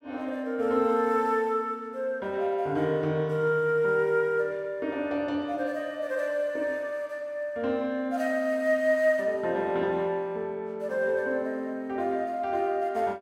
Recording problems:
none

